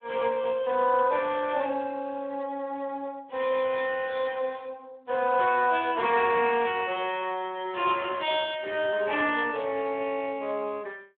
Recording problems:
phone line; 320 Hz to 3.5 kHz, Speex

